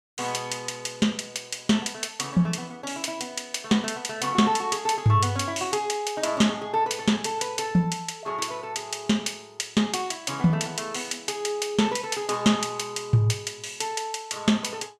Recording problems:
none

